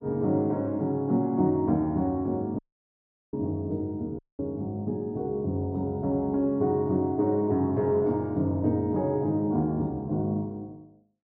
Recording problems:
audio cutting out; at 2.5 s for 0.5 s and at 4 s

